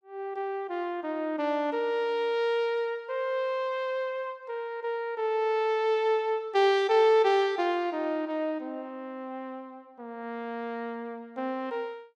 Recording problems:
none

